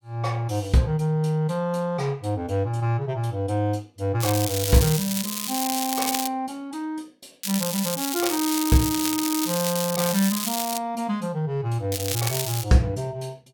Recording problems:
crackle; from 4 to 6.5 s, from 7.5 to 11 s and at 12 s; loose cable, SNR 2 dB

